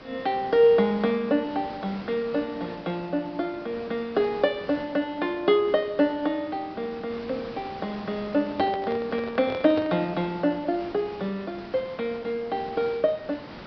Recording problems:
low-pass filter; nothing above 5.5 kHz
background hiss; slope -5 dB per octave, SNR 16 dB
handling noise; from 8.5 to 10 s; peak -2 dB vs average level

